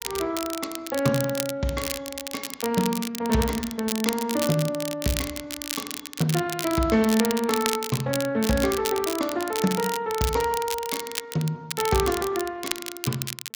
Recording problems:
codec artefacts; Speex, log-spectral distance 2 dB
crackle; vinyl, SNR 6 dB

